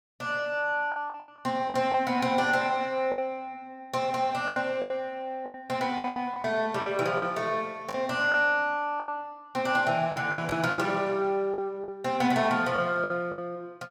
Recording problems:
packet loss; 10% of the sound replaced, filled with the last packet

